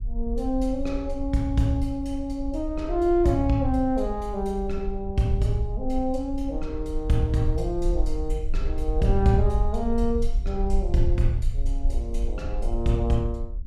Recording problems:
low-frequency rumble; below 48 Hz, SNR 5 dB

